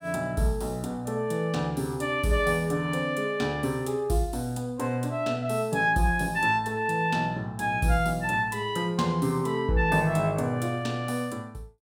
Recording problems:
none

